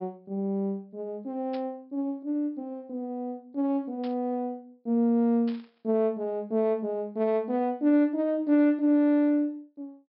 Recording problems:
low-pass filter; nothing above 5.3 kHz
burst of static; at 1.5 s, at 4 s and at 5.5 s; peak -15 dB vs average level

